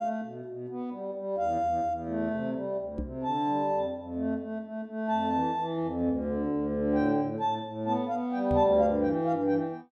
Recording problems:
microphone thump; at 3 s and at 8.5 s; peak -1 dB vs average level

